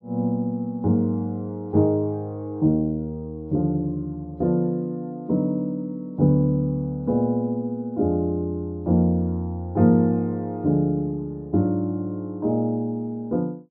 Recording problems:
none

